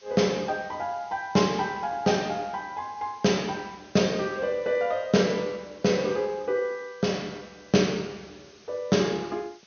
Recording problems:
low-pass filter; nothing above 6.5 kHz
hiss; slope +1 dB per octave, SNR 27 dB

